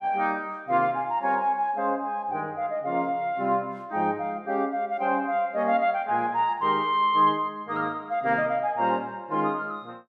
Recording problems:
none

